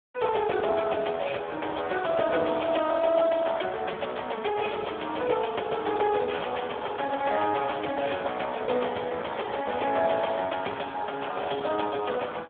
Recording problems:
phone line; 280 Hz to 3.4 kHz, Speex

